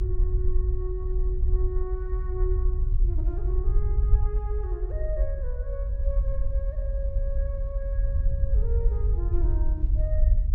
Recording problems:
low-pass filter; nothing above 8 kHz
rumble; below 58 Hz, SNR -11 dB
wind on the microphone; below 130 Hz, SNR 14 dB

